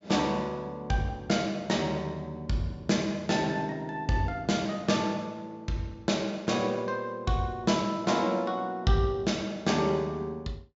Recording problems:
low-pass filter; nothing above 8 kHz

